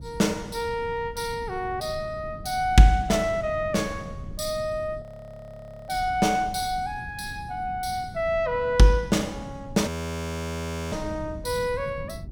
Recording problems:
wind noise; below 160 Hz, SNR 15 dB
frozen audio; at 5 s for 1 s and at 10 s for 1 s

